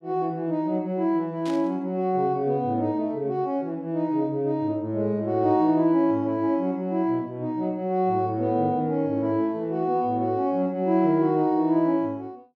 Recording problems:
static burst; at 1.5 s; peak -13 dB vs average level

